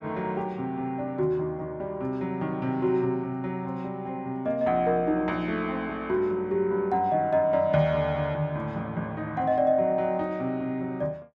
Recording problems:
none

